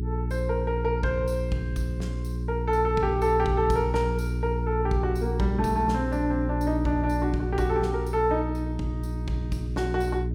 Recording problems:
hum; 60 Hz, harmonics up to 420 Hz, SNR 2 dB

